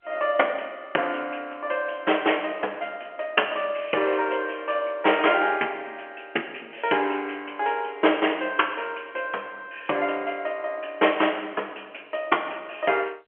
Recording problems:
phone line; 280 Hz to 3.2 kHz, G.711

